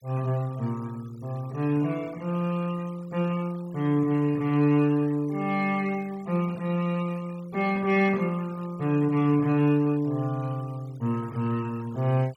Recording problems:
denoising artefacts; signal-to-artefact ratio 24 dB

